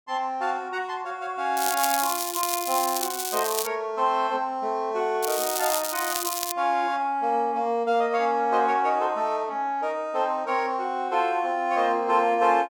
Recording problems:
crackle; from 1.5 to 3.5 s and from 5 to 6.5 s; loose cable, SNR 3 dB

